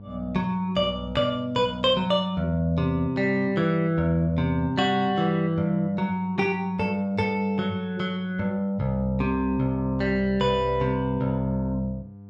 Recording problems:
hum; 50 Hz, harmonics up to 700 Hz, SNR 20 dB

